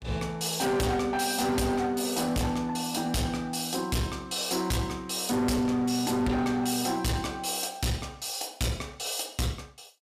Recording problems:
distortion; hard clipping, signal-to-distortion ratio 6 dB

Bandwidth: 15 kHz